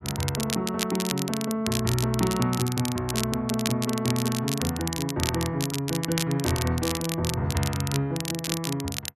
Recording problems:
crackling; vinyl, SNR 5 dB

